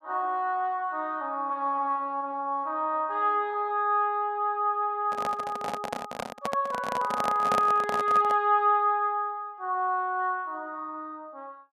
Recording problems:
microphone handling noise; from 5 to 8.5 s; peak +1 dB vs average level

